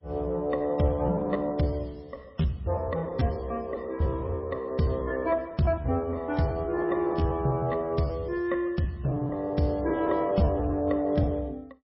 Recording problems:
codec artefacts; MP3, log-spectral distance 2 dB, nothing above 5.3 kHz
lost packets; 15% of the sound replaced, filled with repeated pitch periods

